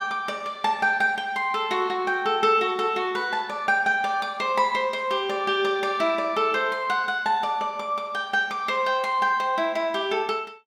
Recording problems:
none

